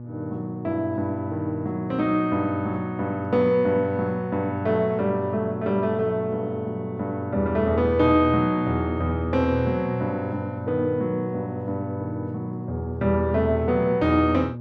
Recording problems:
electrical hum; 60 Hz, harmonics up to 840 Hz, SNR 12 dB

